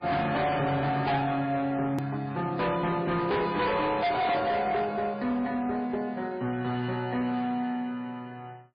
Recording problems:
lossy compression; MP3, log-spectral distance 2 dB, nothing above 14.6 kHz
distorted audio; hard clipping, signal-to-distortion ratio 7 dB
click at an edit; at 2 s

